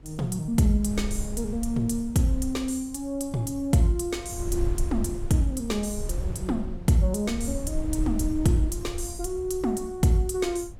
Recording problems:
wind noise; below 76 Hz, SNR 9 dB

